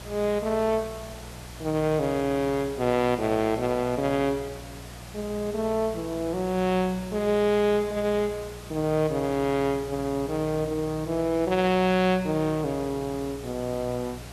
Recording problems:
mains hum; 60 Hz, harmonics up to 720 Hz, SNR 18 dB
hiss; slope -3 dB per octave, SNR 17 dB

